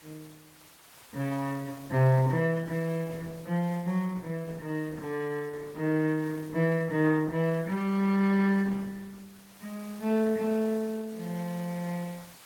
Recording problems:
codec artefacts; Opus, log-spectral distance 4 dB
background hiss; slope -1 dB per octave, SNR 24 dB

